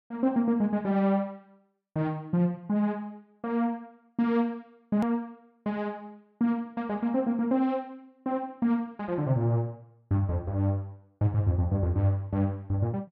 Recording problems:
click at an edit; at 5 s

